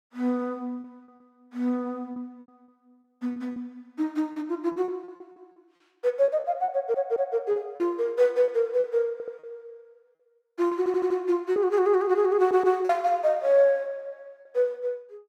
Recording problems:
packet loss; 8% of the sound replaced, filled with repeated pitch periods
audio stuttering; 4 times, first at 6.5 s

